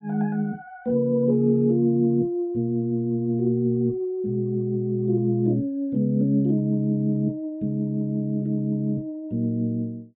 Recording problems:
treble missing; nothing above 4 kHz

